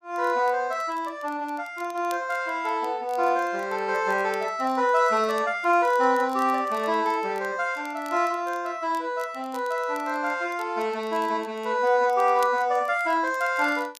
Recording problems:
crackling; vinyl, SNR 26 dB

